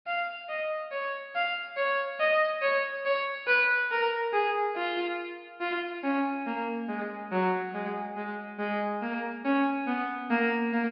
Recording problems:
low-pass filter; nothing above 5.5 kHz

